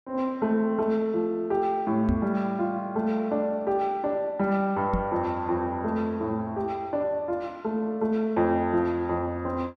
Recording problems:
microphone thump; at 2 s and at 5 s; peak +3 dB vs average level

